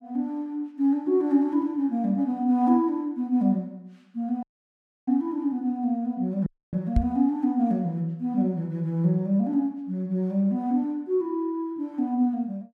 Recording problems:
audio cutting out; at 4.5 s for 0.5 s and at 6.5 s
microphone bump; at 7 s; peak +6 dB vs average level

